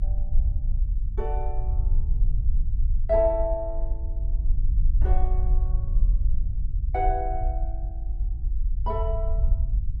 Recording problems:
rumble; below 52 Hz, SNR -2 dB

